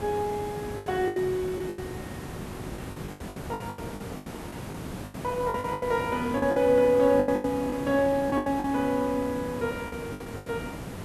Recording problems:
hiss; slope -6 dB per octave, SNR 11 dB
lost packets; 14% of the sound replaced, filled with the last packet

